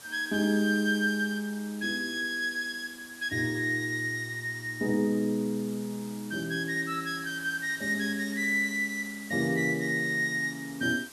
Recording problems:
hiss; slope -1 dB per octave, SNR 17 dB

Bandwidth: 12.5 kHz